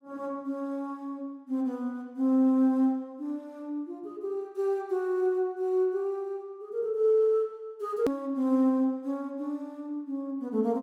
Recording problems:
click at an edit; at 8 s

